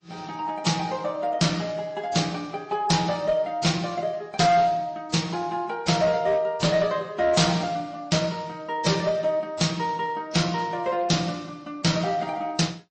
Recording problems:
lossy codec; MP3, then AAC, log-spectral distance 3 dB, nothing above 8.2 kHz
distorted audio; hard clipping, uneven, signal-to-distortion ratio 11 dB

